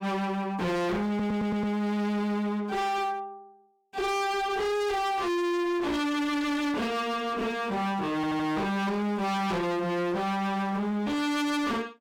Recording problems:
distorted audio; hard clipping, uneven, signal-to-distortion ratio 6 dB
stutter; at 1 s and at 8 s

